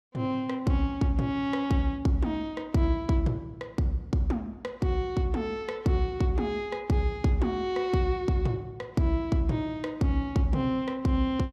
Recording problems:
none

